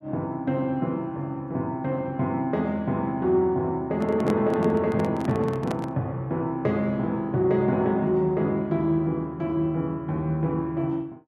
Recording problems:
microphone handling noise; from 4 to 6 s; peak -3 dB vs average level

